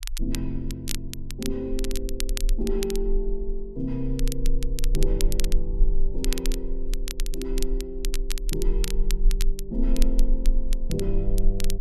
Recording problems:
rumble; below 32 Hz, strongest tone 20 Hz, SNR -2 dB
crackling; vinyl, SNR 5 dB

